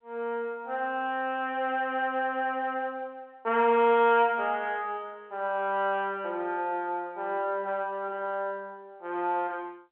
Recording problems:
telephone audio; 220 Hz to 3.2 kHz, G.711

